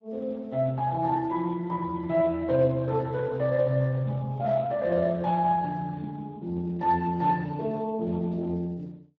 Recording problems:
lossy codec; Speex, log-spectral distance 2 dB

